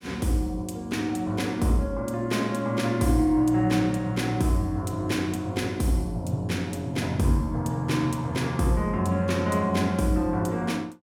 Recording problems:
none

